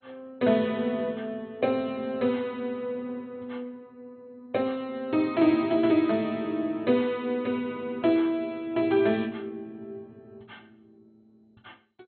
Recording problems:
lossy compression; MP2, log-spectral distance 2 dB, nothing above 3.6 kHz

